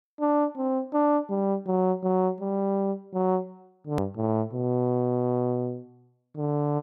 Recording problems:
click at an edit; at 4 s

